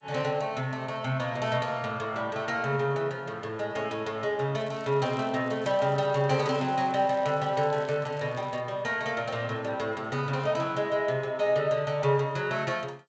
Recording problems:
lossy codec; G.722, log-spectral distance 2 dB
crackle; from 4.5 to 8.5 s; loose cable, SNR 27 dB

